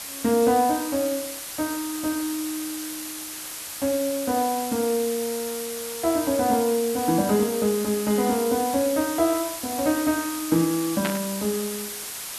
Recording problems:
hiss; slope +1 dB per octave, SNR 7 dB
static burst; at 11 s; peak -1 dB vs average level

